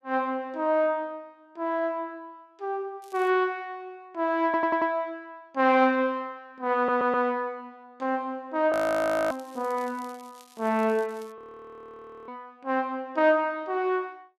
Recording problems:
crackle; at 3 s and from 9.5 to 11 s; loose cable, SNR 27 dB
stutter; at 4.5 s and at 7 s
frozen audio; at 8.5 s for 0.5 s and at 11 s for 1 s

